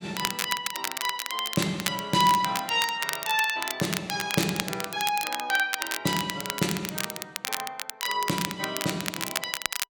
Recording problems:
crackle; vinyl, SNR 4 dB

